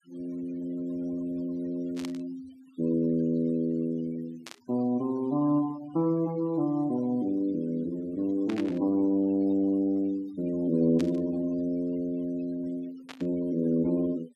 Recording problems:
denoising artefacts; signal-to-artefact ratio 21 dB
burst of static; 5 times, first at 2 s; peak -8 dB vs average level

